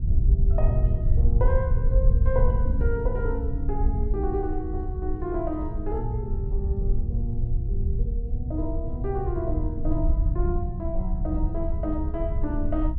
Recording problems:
low-frequency rumble; below 74 Hz, SNR -5 dB

